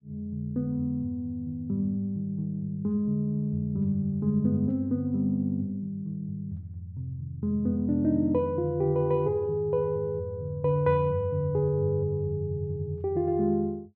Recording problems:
none

